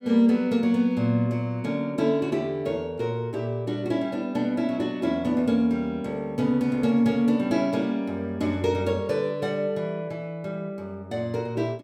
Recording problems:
none

